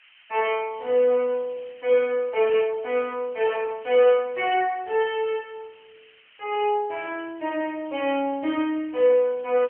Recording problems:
phone line; 240 Hz to 3.2 kHz, AMR-NB
background hiss; SNR 27 dB

